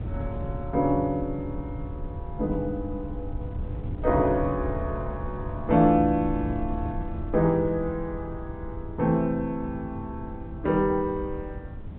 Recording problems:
treble missing; nothing above 4 kHz
wind noise; below 120 Hz, SNR 9 dB

